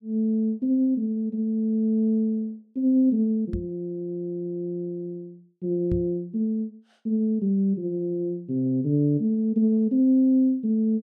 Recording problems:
microphone bump; at 3.5 s and at 6 s; peak -1 dB vs average level

